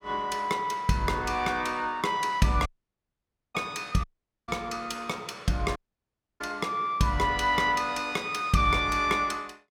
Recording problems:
dropout; at 2.5 s for 1 s, at 4 s and at 6 s for 0.5 s

